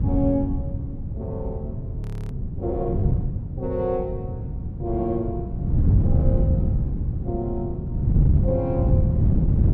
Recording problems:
wind noise; below 150 Hz, SNR -4 dB
frozen audio; at 2 s

